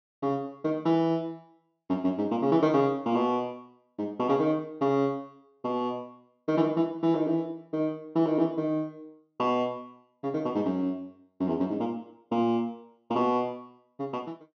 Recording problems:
treble missing; nothing above 6.4 kHz

